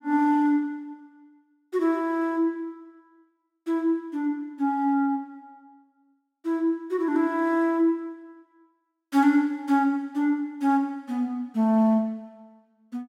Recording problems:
none

